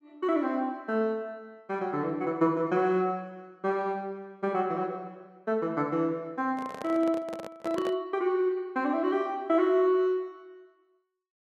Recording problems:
handling noise; from 6.5 to 8 s; peak -4 dB vs average level

